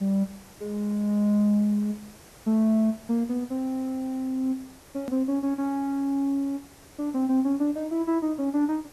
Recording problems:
hiss; SNR 23 dB
hard cut with a click; at 5 s

